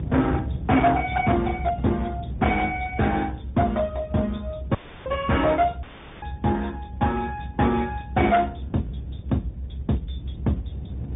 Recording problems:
treble missing; nothing above 3.7 kHz
lossy codec; Speex, then Opus, log-spectral distance 2 dB
distorted audio; hard clipping, signal-to-distortion ratio 12 dB
low-frequency rumble; below 160 Hz, strongest tone 68 Hz, SNR 10 dB
dropout; at 5 s and at 6 s

